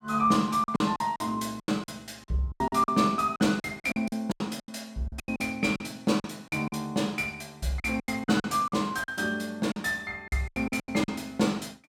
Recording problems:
packet loss; 15% of the sound replaced, filled with silence

